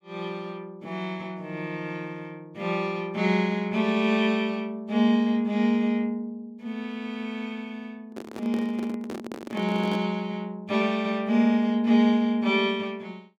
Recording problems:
handling noise; from 8 to 10 s; peak -6 dB vs average level

